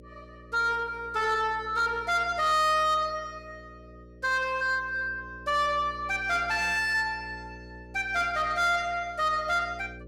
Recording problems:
distortion; soft clipping, signal-to-distortion ratio 10 dB
hum; 60 Hz, harmonics up to 600 Hz, SNR 21 dB

